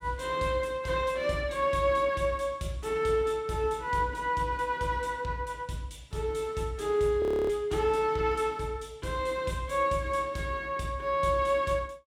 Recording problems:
frozen audio; at 7 s

